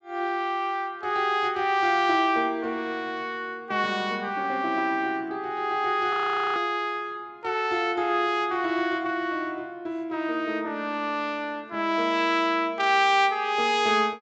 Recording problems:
treble missing; nothing above 8 kHz
audio freezing; at 6 s

